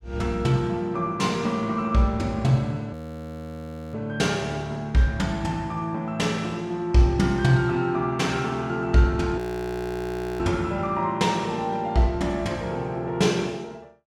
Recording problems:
audio freezing; at 3 s for 1 s and at 9.5 s for 1 s

